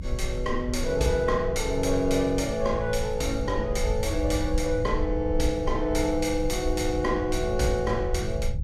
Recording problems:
low-frequency rumble; below 76 Hz, SNR 7 dB

